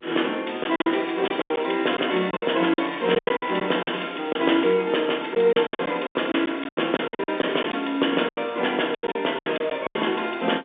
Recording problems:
telephone audio; 260 Hz to 3.6 kHz, G.711
packet loss; 14% of the sound replaced, filled with silence
crackling; at 2.5 s, from 3.5 to 4.5 s and at 6.5 s; loose cable, SNR 22 dB

